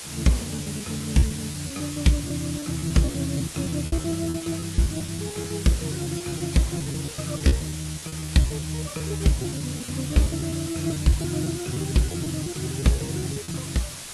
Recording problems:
lossy compression; AAC, log-spectral distance 12 dB
background hiss; slope +1 dB per octave, SNR 9 dB
wind noise; below 760 Hz, SNR 28 dB
lost packets; 14% of the sound replaced, filled with repeated pitch periods

